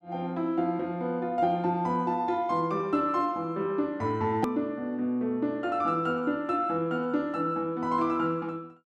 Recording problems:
click at an edit; at 4.5 s

